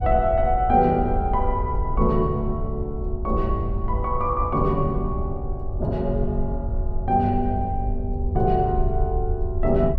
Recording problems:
rumble; below 72 Hz, SNR 5 dB

